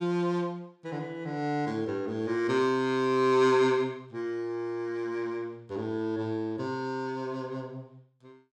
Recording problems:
none

